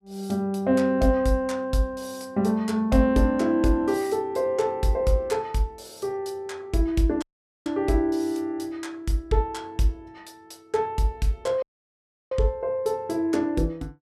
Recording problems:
audio cutting out; at 7 s and at 12 s for 0.5 s

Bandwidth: 15 kHz